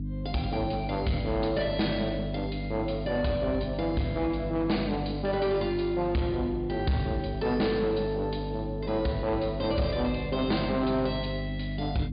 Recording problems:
low-pass filter; nothing above 4.9 kHz
distorted audio; soft clipping, signal-to-distortion ratio 12 dB
electrical hum; 50 Hz, harmonics up to 300 Hz, SNR 6 dB

